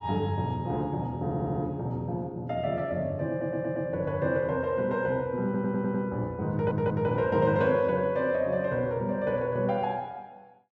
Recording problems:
stutter; 4 times, first at 1 s

